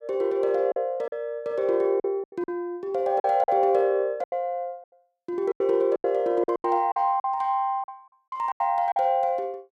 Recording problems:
lost packets; 11% of the sound replaced, filled with silence

